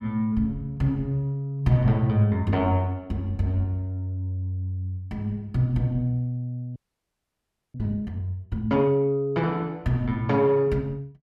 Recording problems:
frozen audio; at 7 s for 1 s

